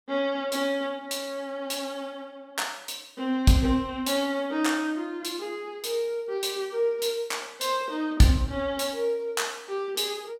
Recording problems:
none

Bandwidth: 17.5 kHz